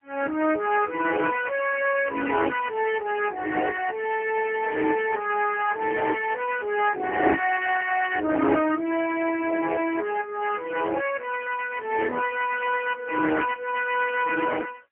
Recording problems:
telephone audio; 240 Hz to 3 kHz, AMR-NB, then MP3

